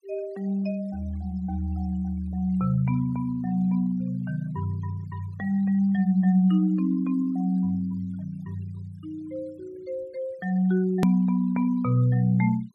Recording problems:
noise reduction artefacts; signal-to-artefact ratio 27 dB
click at an edit; at 11 s

